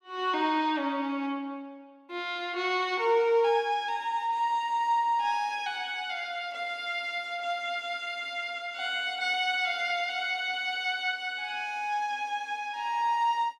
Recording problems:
none

